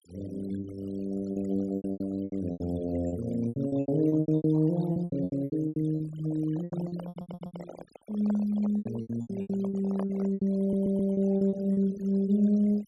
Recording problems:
denoising artefacts; signal-to-artefact ratio 21 dB
lost packets; 18% of the sound replaced, filled with repeated pitch periods
microphone handling noise; from 6 to 10 s; peak -5 dB vs average level
stutter; at 7 s and at 11 s

